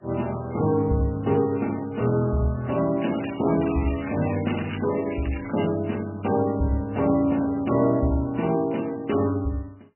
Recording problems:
codec artefacts; MP3, then MP3, log-spectral distance 7 dB, nothing above 2.9 kHz
crackling; from 3 to 6 s; loose cable, SNR 14 dB

